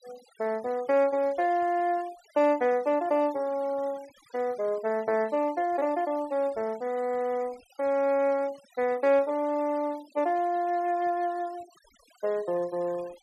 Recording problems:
denoising artefacts; signal-to-artefact ratio 24 dB

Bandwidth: 13.5 kHz